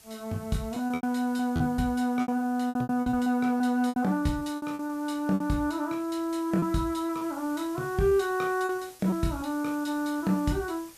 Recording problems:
background hiss; slope 0 dB per octave, SNR 22 dB
lost packets; 11% of the sound replaced, filled with repeated pitch periods

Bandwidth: 14.5 kHz